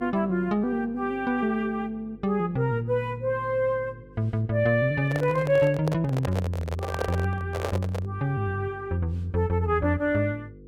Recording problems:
electrical hum; 50 Hz, harmonics up to 500 Hz, SNR 22 dB
handling noise; from 5 to 8 s; peak +1 dB vs average level

